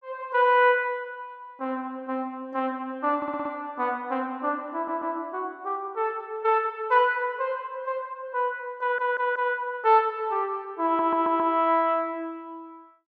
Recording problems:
audio stuttering; 4 times, first at 3 s

